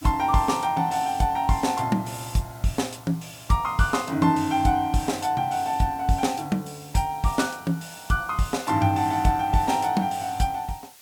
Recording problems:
background hiss; slope +1 dB per octave, SNR 23 dB

